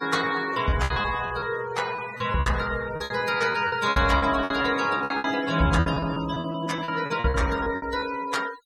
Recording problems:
noise reduction artefacts; signal-to-artefact ratio 14 dB
lost packets; 15% of the sound replaced, filled with repeated pitch periods

